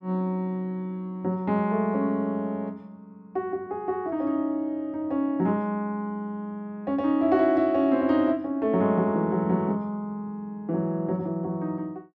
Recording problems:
none

